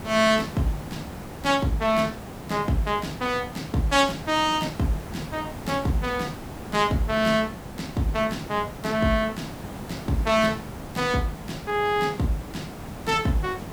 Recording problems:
background hiss; slope -7 dB per octave, SNR 12 dB

